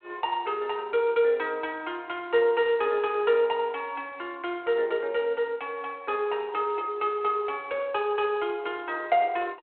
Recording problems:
telephone audio; 300 Hz to 3.5 kHz, G.726

